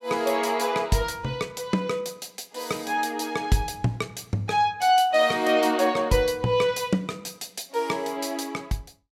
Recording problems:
none

